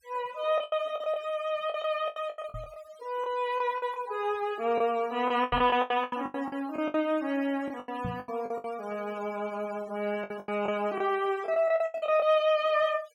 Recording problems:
noise reduction artefacts; signal-to-artefact ratio 22 dB
lost packets; 14% of the sound replaced, filled with the last packet
microphone thump; at 2.5 s, at 5.5 s and at 8 s; peak -2 dB vs average level

